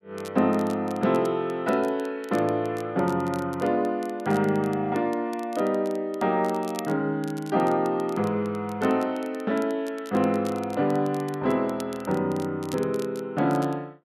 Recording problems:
crackle; vinyl, SNR 22 dB

